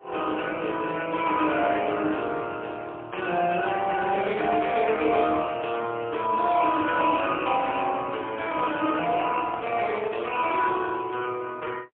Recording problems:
telephone audio; 280 Hz to 3.3 kHz, AMR-NB, then MP3
microphone handling noise; from 8.5 to 11 s; peak -5 dB vs average level

